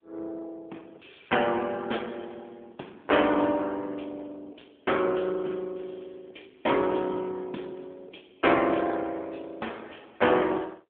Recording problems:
phone line; 240 Hz to 3.4 kHz, AMR-NB

